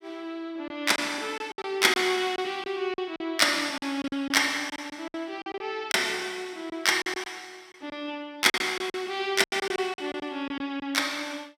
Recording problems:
packet loss; 10% of the sound replaced, filled with silence

